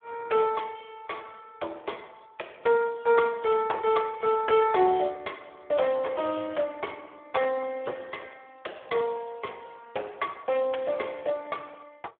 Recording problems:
telephone audio; 320 Hz to 3.4 kHz, Speex

